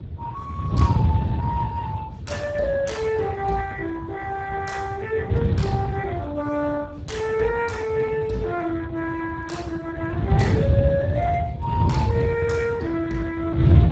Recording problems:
lossy codec; Speex, log-spectral distance 3 dB, nothing above 7.6 kHz
wind noise; below 160 Hz, SNR -1 dB

